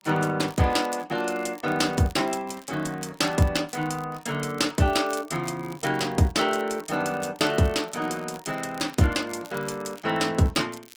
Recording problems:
lossy codec; Opus, log-spectral distance 3 dB, nothing above 19 kHz
crackle; vinyl, SNR 23 dB

